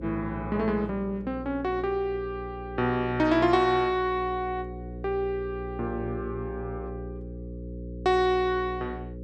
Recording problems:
mains hum; 60 Hz, harmonics up to 540 Hz, SNR 11 dB

